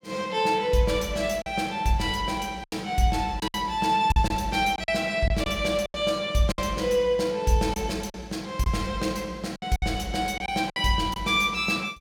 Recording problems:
packet loss; 7% of the sound replaced, filled with silence

